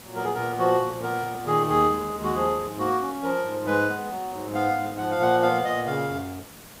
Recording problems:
background hiss; slope -3 dB per octave, SNR 18 dB

